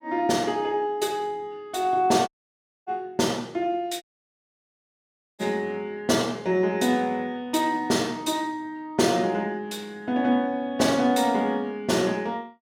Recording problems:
dropout; at 2.5 s for 0.5 s and at 4 s for 1.5 s

